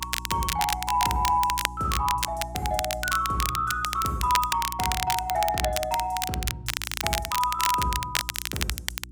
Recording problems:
electrical hum; 60 Hz, harmonics up to 360 Hz, SNR 15 dB
crackle; vinyl, SNR 3 dB

